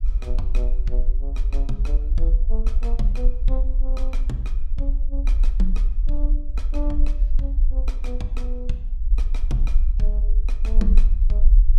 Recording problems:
rumble; below 42 Hz, strongest tone 22 Hz, SNR -11 dB

